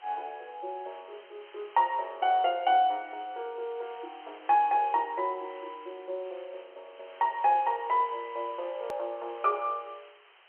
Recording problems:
phone line; 320 Hz to 3.4 kHz, G.711
background hiss; SNR 24 dB
hard cut with a click; at 9 s

